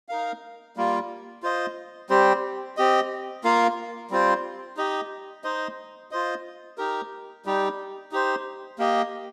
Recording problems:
none

